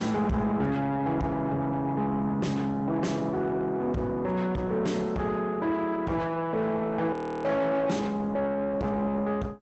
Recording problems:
treble missing; nothing above 7.8 kHz
lossy compression; Opus, log-spectral distance 2 dB
distorted audio; soft clipping, signal-to-distortion ratio 7 dB
frozen audio; at 7 s

